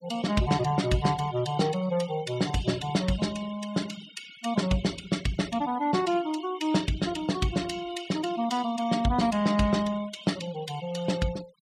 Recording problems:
denoising artefacts; signal-to-artefact ratio 17 dB

